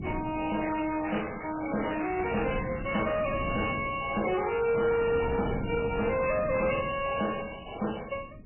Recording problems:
lossy codec; AAC, then MP3, log-spectral distance 11 dB, nothing above 2.6 kHz
distortion; hard clipping, uneven, signal-to-distortion ratio 10 dB
wind noise; below 270 Hz, SNR 10 dB
crackle; from 0.5 to 3 s and at 4.5 s; loose cable, SNR 12 dB

